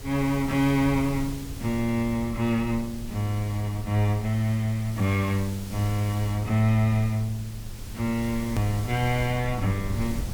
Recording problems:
hiss; slope -1 dB per octave, SNR 17 dB
rumble; below 110 Hz, SNR 13 dB
edit click; at 8.5 s

